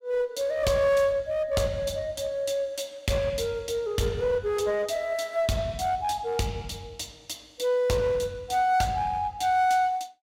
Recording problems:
distorted audio; hard clipping, uneven, signal-to-distortion ratio 10 dB

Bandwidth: 16 kHz